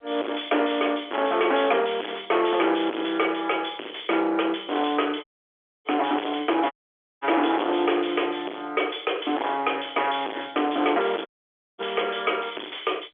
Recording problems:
telephone audio; 280 Hz to 3.4 kHz, G.711
distorted audio; soft clipping, signal-to-distortion ratio 4 dB
dropout; at 5 s for 0.5 s, at 6.5 s for 0.5 s and at 11 s for 0.5 s

